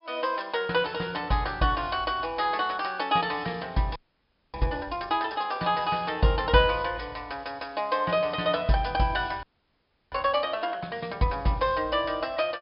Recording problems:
low-pass filter; nothing above 5.5 kHz
audio freezing; at 4 s for 0.5 s and at 9.5 s for 0.5 s

